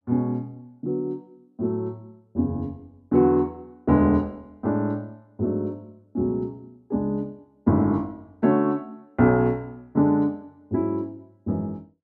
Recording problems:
none

